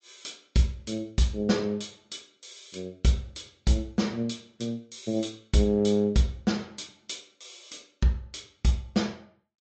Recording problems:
treble missing; nothing above 7.8 kHz
lossy compression; MP3, log-spectral distance 6 dB

